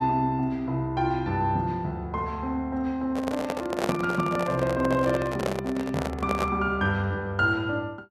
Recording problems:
microphone handling noise; from 3 to 6.5 s; peak +3 dB vs average level

